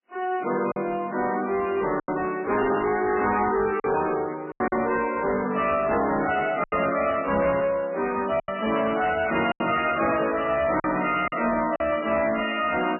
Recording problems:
lossy codec; AAC, then MP3, log-spectral distance 5 dB, nothing above 2.5 kHz
distorted audio; soft clipping, signal-to-distortion ratio 11 dB
lost packets; 5% of the sound replaced, filled with silence

